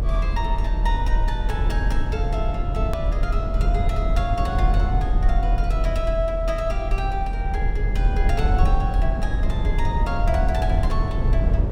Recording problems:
low-frequency rumble; below 68 Hz, strongest tone 40 Hz, SNR -5 dB
hard cut with a click; at 3 s

